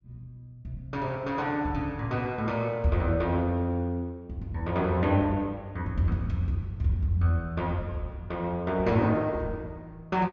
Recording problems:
low-pass filter; nothing above 7.5 kHz

